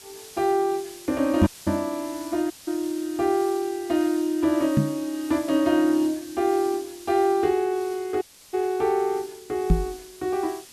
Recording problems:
background hiss; slope +1 dB per octave, SNR 18 dB
microphone thump; at 1.5 s, at 5 s and at 9.5 s; peak +8 dB vs average level
dropout; at 1.5 s, at 2.5 s and at 8 s

